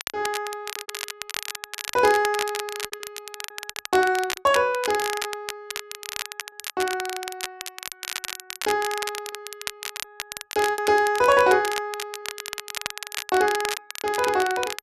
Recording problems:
crackling; vinyl, SNR 9 dB
packet loss; 9% of the sound replaced, filled with repeated pitch periods

